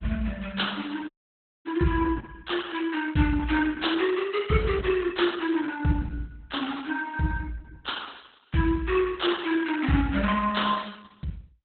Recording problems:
lossy codec; Opus, log-spectral distance 5 dB, nothing above 4 kHz
audio cutting out; at 1 s for 0.5 s

